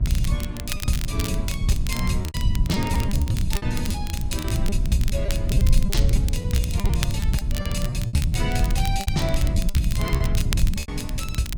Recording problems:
electrical hum; 60 Hz, harmonics up to 1.3 kHz, SNR 11 dB
low-frequency rumble; below 110 Hz, SNR -4 dB
crackling; vinyl, SNR 6 dB
packet loss; 12% of the sound replaced, filled with repeated pitch periods

